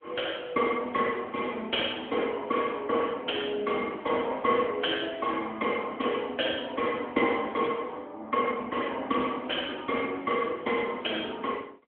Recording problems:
telephone audio; 220 Hz to 3.3 kHz, AMR-NB

